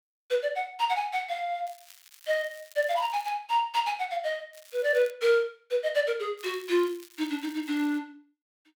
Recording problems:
crackle; from 1.5 to 3.5 s, at 4.5 s and from 6.5 to 8 s; loose cable, SNR 23 dB

